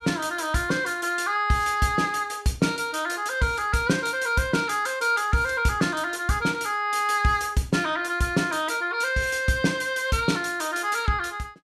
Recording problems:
none

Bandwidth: 14 kHz